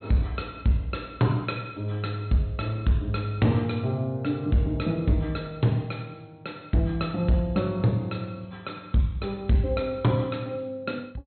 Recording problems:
low-pass filter; nothing above 4.2 kHz
distorted audio; hard clipping, signal-to-distortion ratio 11 dB

